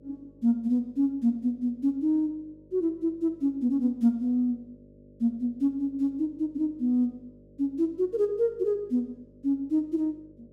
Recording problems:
hum; 50 Hz, harmonics up to 600 Hz, SNR 28 dB

